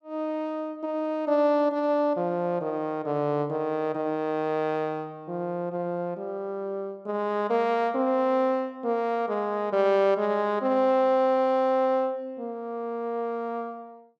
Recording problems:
none

